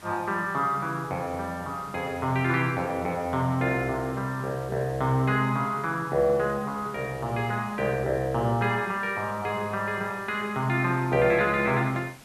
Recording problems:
hiss; slope -3 dB per octave, SNR 22 dB

